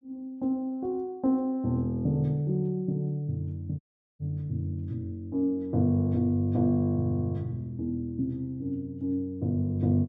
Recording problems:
audio cutting out; at 4 s

